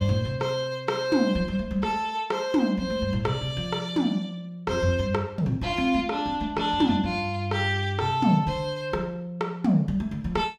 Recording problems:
none

